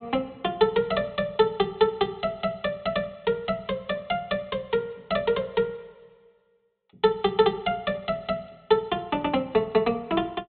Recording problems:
treble missing; nothing above 4 kHz

